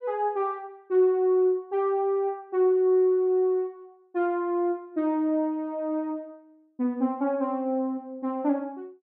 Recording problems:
none

